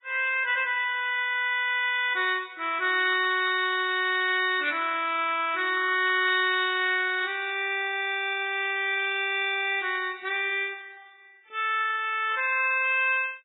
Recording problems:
lossy codec; AAC, then Vorbis, log-spectral distance 3 dB, nothing above 3.7 kHz

